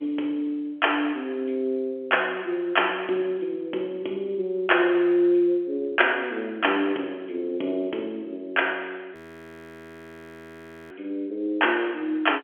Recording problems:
phone line; 260 Hz to 3.3 kHz, G.711
frozen audio; at 9 s for 2 s

